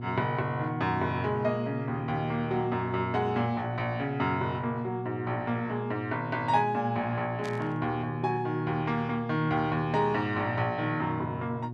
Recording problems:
electrical hum; 60 Hz, harmonics up to 720 Hz, SNR 8 dB
burst of static; at 7.5 s; peak -9 dB vs average level

